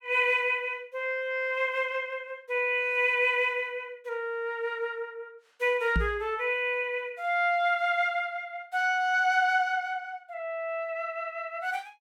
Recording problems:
knock on the microphone; at 6 s; peak +3 dB vs average level

